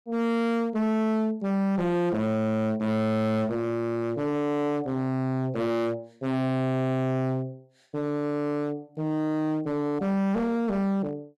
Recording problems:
distorted audio; hard clipping, uneven, signal-to-distortion ratio 6 dB

